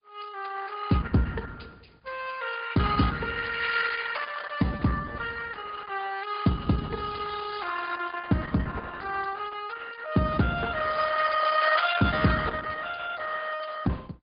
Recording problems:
low-pass filter; nothing above 4.9 kHz
lossy codec; Opus, then Opus, log-spectral distance 6 dB

